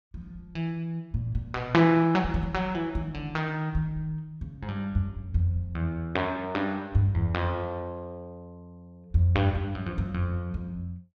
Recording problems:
none

